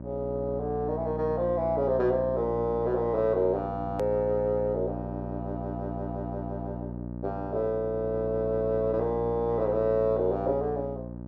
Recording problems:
treble cut off; nothing above 8 kHz
hum; 60 Hz, harmonics up to 960 Hz, SNR 8 dB
click at an edit; at 4 s

